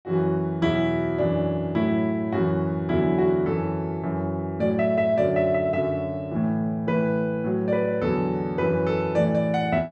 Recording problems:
none

